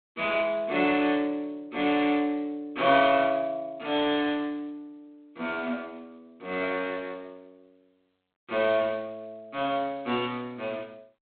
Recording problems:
telephone audio; 240 Hz to 3.7 kHz, G.726

